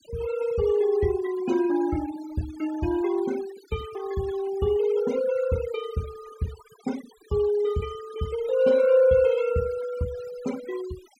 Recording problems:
denoising artefacts; signal-to-artefact ratio 18 dB

